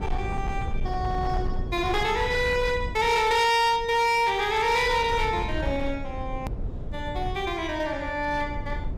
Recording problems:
distortion; hard clipping, uneven, signal-to-distortion ratio 10 dB
rumble; below 120 Hz, SNR 10 dB
edit click; at 6.5 s

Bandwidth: 15.5 kHz